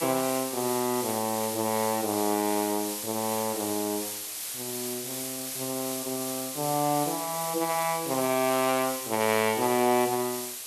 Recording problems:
background hiss; slope +2 dB per octave, SNR 5 dB

